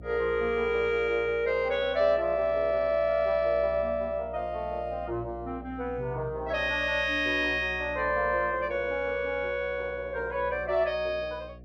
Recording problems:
mains hum; 60 Hz, harmonics up to 720 Hz, SNR 18 dB

